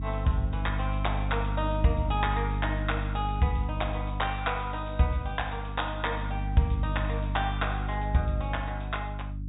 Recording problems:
treble cut off; nothing above 3.8 kHz
lossy codec; G.722, log-spectral distance 5 dB
hum; 50 Hz, harmonics up to 300 Hz, SNR 2 dB

